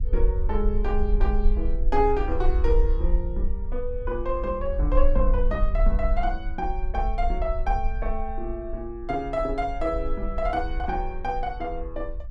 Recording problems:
rumble; below 46 Hz, strongest tone 20 Hz, SNR 0 dB

